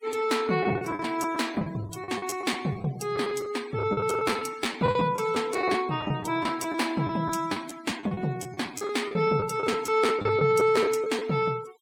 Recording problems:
denoising artefacts; signal-to-artefact ratio 20 dB
lost packets; 13% of the sound replaced, filled with the last packet

